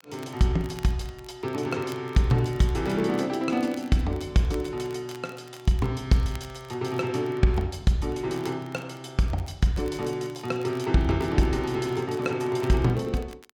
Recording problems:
crackling; vinyl, SNR 25 dB

